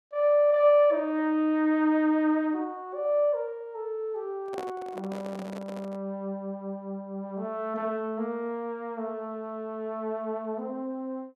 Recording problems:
microphone handling noise; from 4.5 to 6 s; peak -6 dB vs average level

